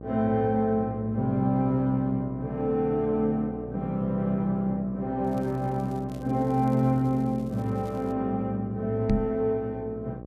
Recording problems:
hum; 60 Hz, harmonics up to 1.1 kHz, SNR 13 dB
crackle; from 5 to 8 s; loose cable, SNR 30 dB
knock on the microphone; at 9 s; peak +6 dB vs average level

